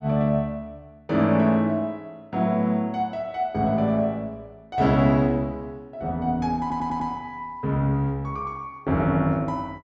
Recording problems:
audio stuttering; at 6.5 s

